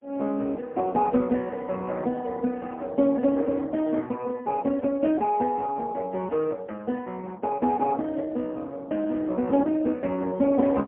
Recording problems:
telephone audio; 190 Hz to 3.7 kHz, AMR-NB, then MP3

